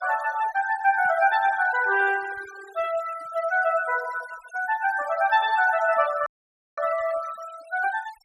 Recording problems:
denoising artefacts; signal-to-artefact ratio 18 dB
dropout; at 6.5 s for 0.5 s

